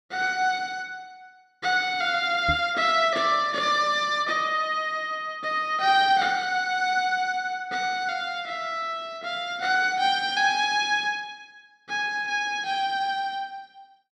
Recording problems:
microphone thump; at 2.5 s; peak -2 dB vs average level

